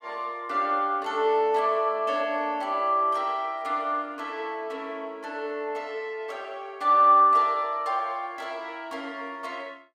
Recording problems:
none

